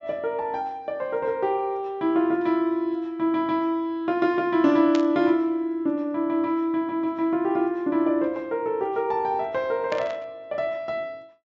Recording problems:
treble cut off; nothing above 7.5 kHz
burst of static; at 5 s and at 10 s; peak -4 dB vs average level

